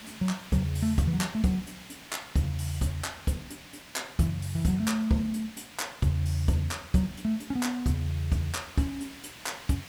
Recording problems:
background hiss; SNR 17 dB

